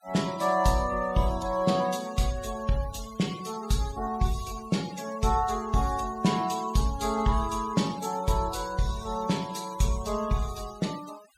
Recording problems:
noise reduction artefacts; signal-to-artefact ratio 16 dB

